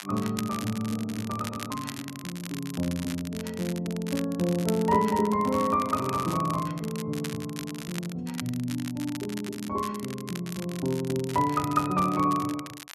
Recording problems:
crackle; vinyl, SNR 12 dB

